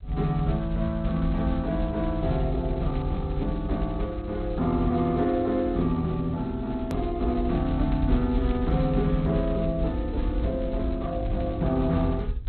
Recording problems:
lossy compression; Speex, log-spectral distance 2 dB, nothing above 13.1 kHz
rumble; below 70 Hz, SNR 6 dB
hard cut with a click; at 7 s

